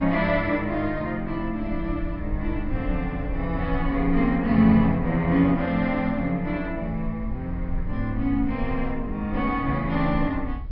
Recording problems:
low-pass filter; nothing above 5.4 kHz
low-frequency rumble; below 62 Hz, SNR 11 dB

